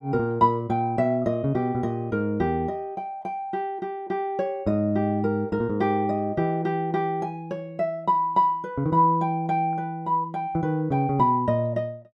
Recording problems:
none

